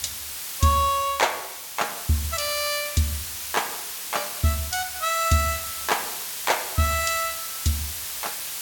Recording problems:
background hiss; slope +2 dB per octave, SNR 5 dB

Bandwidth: 17.5 kHz